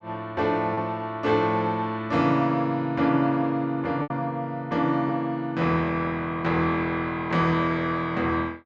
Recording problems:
packet loss; 1.4% of the sound replaced, filled with repeated pitch periods

